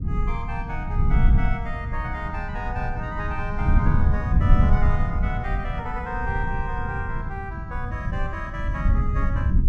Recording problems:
low-frequency rumble; below 96 Hz, SNR -6 dB

